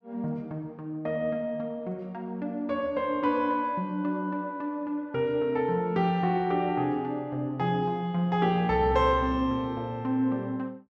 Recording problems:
none

